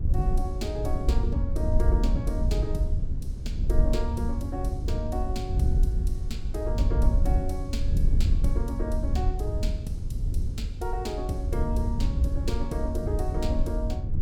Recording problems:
electrical hum; 60 Hz, harmonics up to 540 Hz, SNR 26 dB
low-frequency rumble; below 54 Hz, strongest tone 22 Hz, SNR 8 dB
wind on the microphone; below 78 Hz, SNR -5 dB

